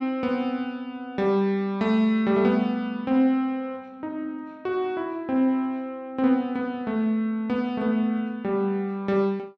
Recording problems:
none

